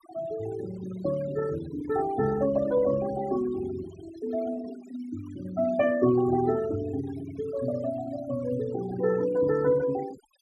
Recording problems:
noise reduction artefacts; signal-to-artefact ratio 15 dB

